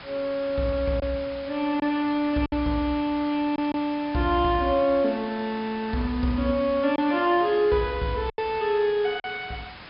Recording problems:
low-pass filter; nothing above 5.5 kHz
background hiss; SNR 17 dB
lost packets; 3% of the sound replaced, filled with silence

